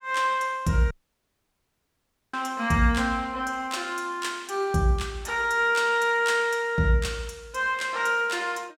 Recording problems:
audio cutting out; at 1 s for 1.5 s

